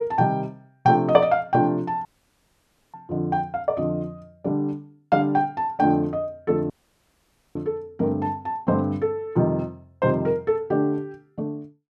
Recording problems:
audio cutting out; at 2 s for 1 s and at 6.5 s for 1 s

